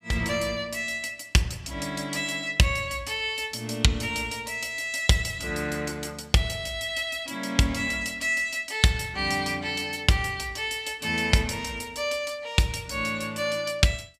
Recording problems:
none

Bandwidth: 14.5 kHz